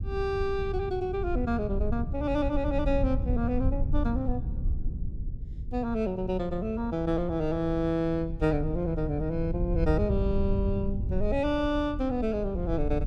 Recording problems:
rumble; below 90 Hz, SNR 4 dB

